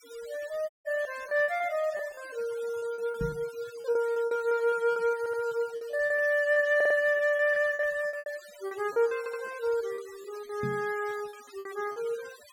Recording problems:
denoising artefacts; signal-to-artefact ratio 21 dB
packet loss; 13% of the sound replaced, filled with repeated pitch periods
audio cutting out; at 0.5 s
microphone thump; at 3 s and at 11 s; peak -2 dB vs average level
stutter; at 5 s, at 7 s and at 9 s

